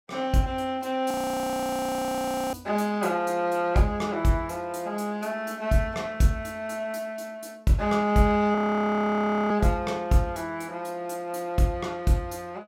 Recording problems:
audio freezing; at 1 s for 1.5 s and at 8.5 s for 1 s

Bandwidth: 16.5 kHz